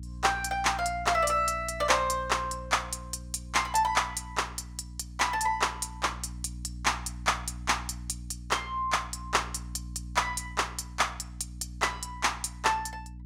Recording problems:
hum; 60 Hz, harmonics up to 300 Hz, SNR 13 dB

